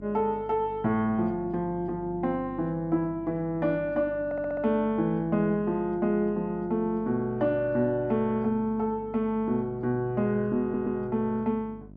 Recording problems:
hum; 50 Hz, harmonics up to 700 Hz, SNR 19 dB
audio stuttering; at 4.5 s and at 11 s

